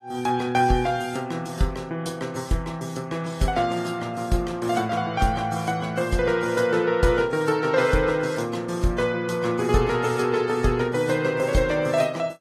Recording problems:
lossy codec; AAC, log-spectral distance 3 dB, nothing above 15.1 kHz

